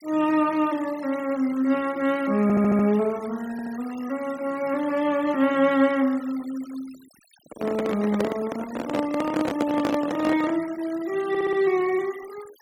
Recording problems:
noise reduction artefacts; signal-to-artefact ratio 20 dB
stutter; at 2.5 s, at 3.5 s and at 11 s
handling noise; from 7.5 to 11 s; peak +2 dB vs average level

